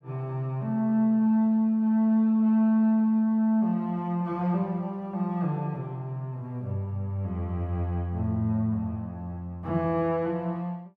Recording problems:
none

